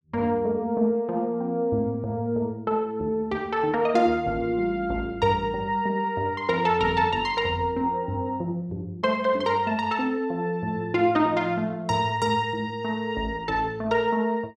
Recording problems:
none

